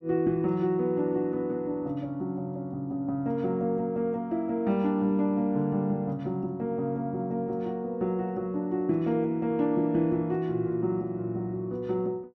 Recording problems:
none

